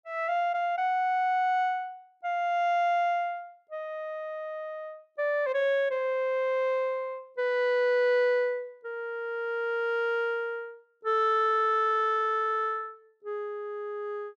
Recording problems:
none

